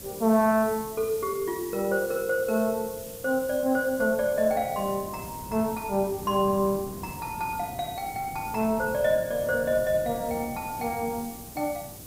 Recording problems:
background hiss; SNR 15 dB
wind noise; below 340 Hz, SNR 17 dB

